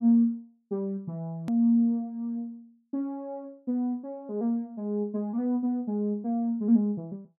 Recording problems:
hard cut with a click; at 1.5 s

